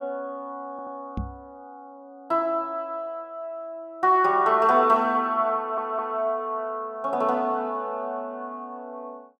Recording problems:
stutter; at 0.5 s and at 5.5 s
microphone bump; at 1 s; peak -3 dB vs average level

